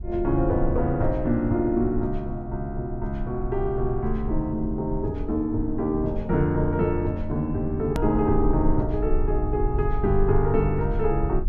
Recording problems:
rumble; below 52 Hz, strongest tone 18 Hz, SNR 8 dB
hard cut with a click; at 8 s

